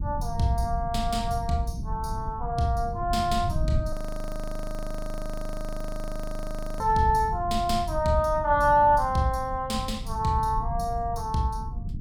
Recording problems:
low-frequency rumble; below 100 Hz, SNR 9 dB
frozen audio; at 4 s for 3 s

